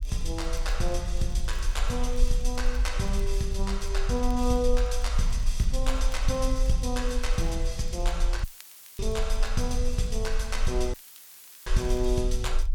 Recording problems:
low-frequency rumble; below 44 Hz, strongest tone 22 Hz, SNR 1 dB
crackling; vinyl, SNR 25 dB
audio cutting out; at 8.5 s for 0.5 s and at 11 s for 0.5 s; filled with static

